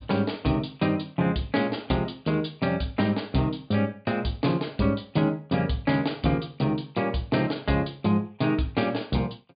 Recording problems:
treble missing; nothing above 4.8 kHz

